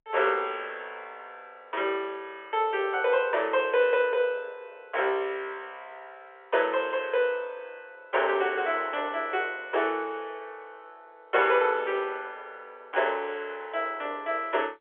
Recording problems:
phone line; 340 Hz to 3.5 kHz, G.711

